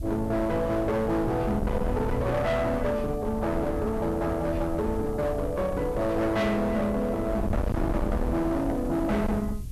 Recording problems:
distortion; hard clipping, signal-to-distortion ratio 7 dB
hiss; SNR 28 dB
wind on the microphone; below 220 Hz, SNR 7 dB

